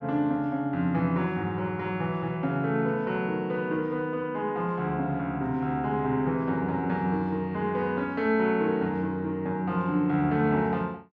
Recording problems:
none

